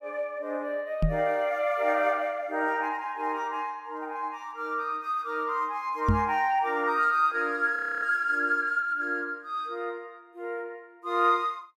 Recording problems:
microphone bump; at 1 s and at 6 s; peak +7 dB vs average level
frozen audio; at 8 s

